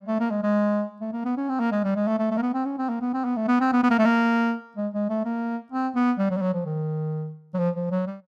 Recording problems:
none

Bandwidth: 14.5 kHz